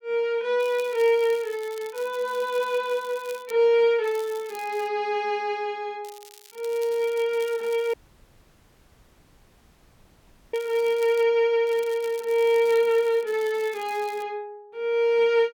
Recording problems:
crackling; 4 times, first at 0.5 s; loose cable, SNR 23 dB
dropout; at 8 s for 2.5 s

